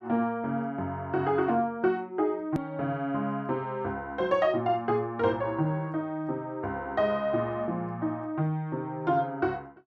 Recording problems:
hard cut with a click; at 2.5 s

